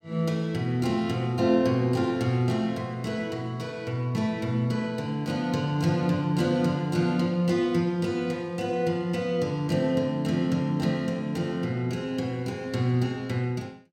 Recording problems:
none

